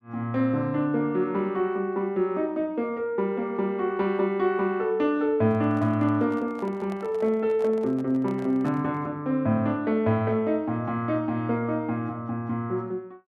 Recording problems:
handling noise; from 5.5 to 9 s; peak -12 dB vs average level

